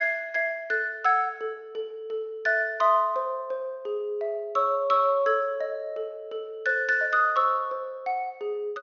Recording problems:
low-pass filter; nothing above 6.5 kHz

